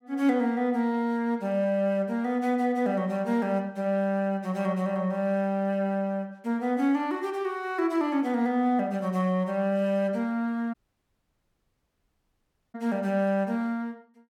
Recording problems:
dropout; at 11 s for 2 s

